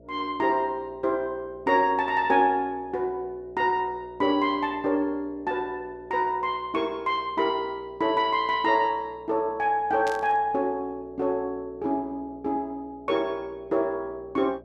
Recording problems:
hum; 60 Hz, harmonics up to 660 Hz, SNR 25 dB
burst of static; at 10 s; peak -8 dB vs average level

